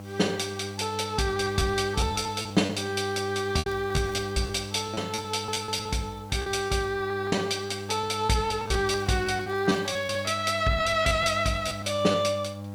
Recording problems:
electrical hum; 50 Hz, harmonics up to 1.1 kHz, SNR 12 dB
hiss; slope +1 dB per octave, SNR 28 dB
packet loss; 10% of the sound replaced, filled with repeated pitch periods
crackling; at 3.5 s and from 9 to 10 s; loose cable, SNR 28 dB

